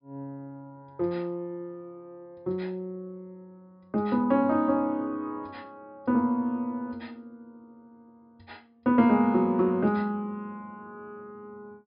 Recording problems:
treble missing; nothing above 5.5 kHz

